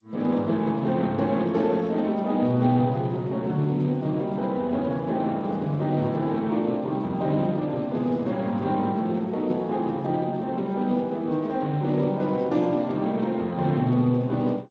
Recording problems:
lossy codec; Speex, then G.722, log-spectral distance 2 dB

